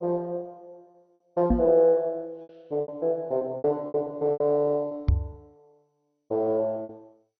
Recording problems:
lossy codec; MP2, log-spectral distance 2 dB
lost packets; 11% of the sound replaced, filled with repeated pitch periods
knock on the microphone; at 1.5 s and at 5 s; peak +7 dB vs average level

